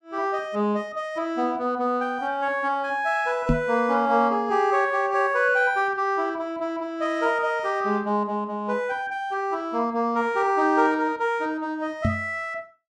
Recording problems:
microphone thump; at 3.5 s and at 12 s; peak +5 dB vs average level

